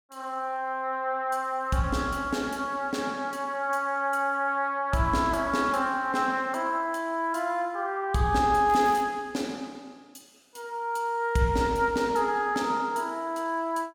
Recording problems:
crackle; at 8.5 s; loose cable, SNR 22 dB

